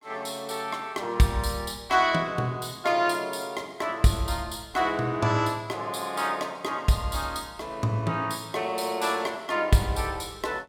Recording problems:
none

